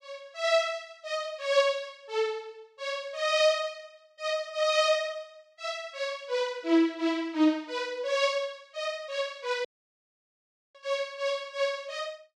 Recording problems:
audio cutting out; at 9.5 s for 1 s

